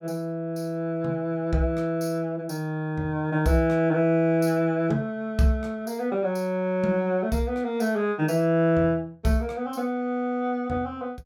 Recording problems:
none

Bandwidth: 17 kHz